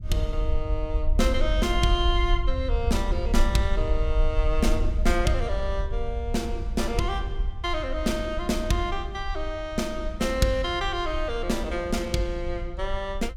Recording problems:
low-frequency rumble; below 56 Hz, SNR 3 dB

